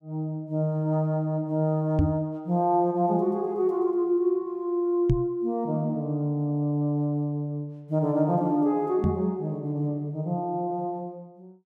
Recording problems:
microphone bump; at 2 s, at 5 s and at 9 s; peak +7 dB vs average level

